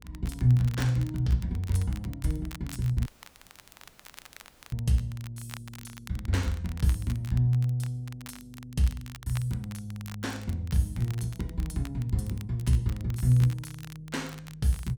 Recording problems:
hum; 50 Hz, harmonics up to 500 Hz, SNR 27 dB
crackle; vinyl, SNR 19 dB
dropout; at 3 s for 1.5 s

